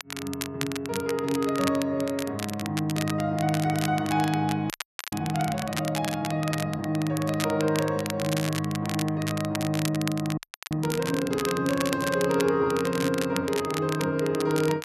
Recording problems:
crackle; vinyl, SNR 9 dB
audio freezing; at 4.5 s and at 10 s

